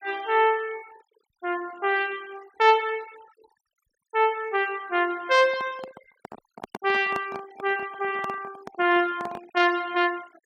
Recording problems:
denoising artefacts; signal-to-artefact ratio 22 dB
microphone handling noise; from 5.5 to 9.5 s; peak -6 dB vs average level

